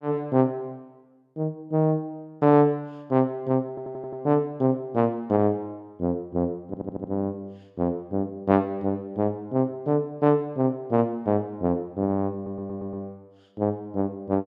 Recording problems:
audio stuttering; at 3.5 s, at 6.5 s and at 12 s

